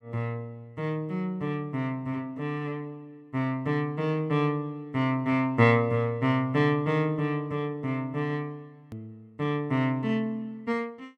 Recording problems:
click at an edit; at 9 s

